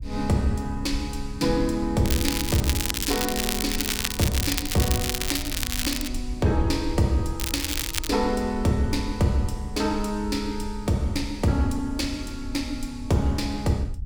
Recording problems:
low-frequency rumble; below 70 Hz, SNR 10 dB
crackle; from 2 to 6 s and at 7.5 s; loose cable, SNR 1 dB

